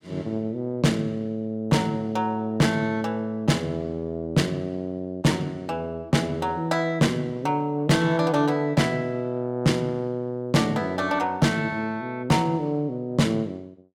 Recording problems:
distorted audio; hard clipping, signal-to-distortion ratio 11 dB

